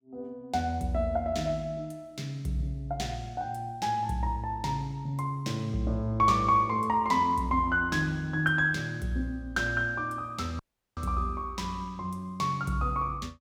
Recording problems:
dropout; at 11 s

